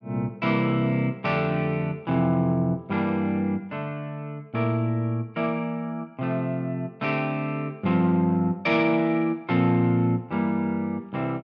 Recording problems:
none

